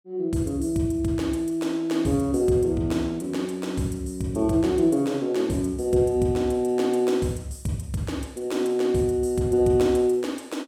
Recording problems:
none

